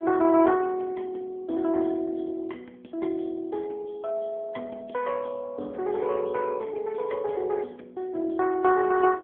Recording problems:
phone line; 260 Hz to 3.2 kHz, AMR-NB

